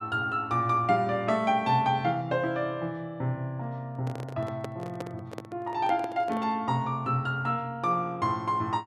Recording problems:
handling noise; from 4 to 6.5 s; peak -4 dB vs average level

